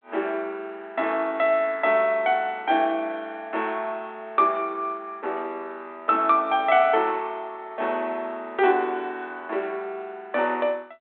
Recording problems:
phone line; 240 Hz to 3.6 kHz, G.726

